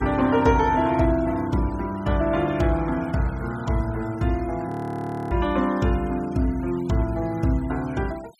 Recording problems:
noise reduction artefacts; signal-to-artefact ratio 22 dB
frozen audio; at 4.5 s for 0.5 s

